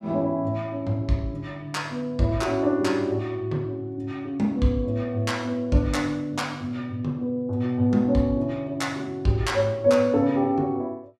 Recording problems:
none

